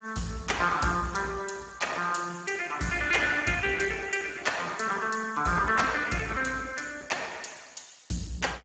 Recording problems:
codec artefacts; Speex, log-spectral distance 6 dB, nothing above 7.6 kHz

